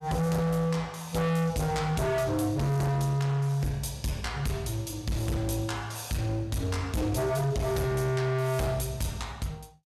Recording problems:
distorted audio; hard clipping, signal-to-distortion ratio 6 dB

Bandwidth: 14.5 kHz